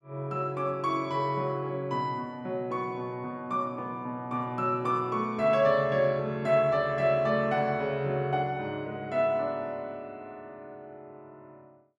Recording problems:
none

